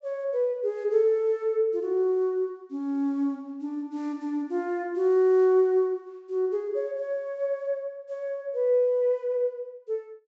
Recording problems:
treble cut off; nothing above 7.8 kHz

